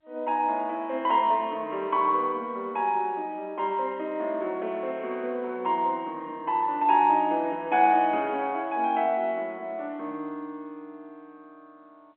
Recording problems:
phone line; 260 Hz to 3.4 kHz, G.711

